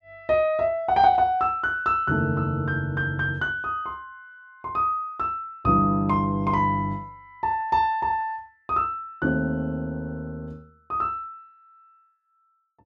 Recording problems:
none

